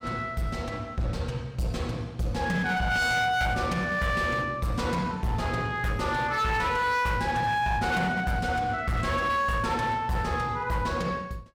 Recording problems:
distortion; hard clipping, signal-to-distortion ratio 10 dB

